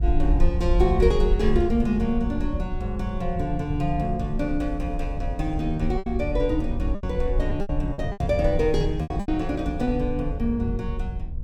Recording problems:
hum; 60 Hz, harmonics up to 1.1 kHz, SNR 26 dB
low-frequency rumble; below 58 Hz, SNR 4 dB
wind noise; below 160 Hz, SNR 10 dB
lost packets; 5% of the sound replaced, filled with repeated pitch periods

